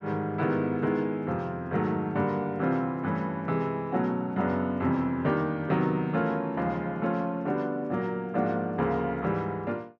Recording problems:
none

